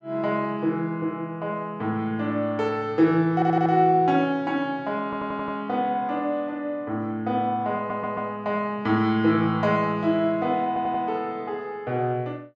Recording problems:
audio stuttering; 4 times, first at 3.5 s

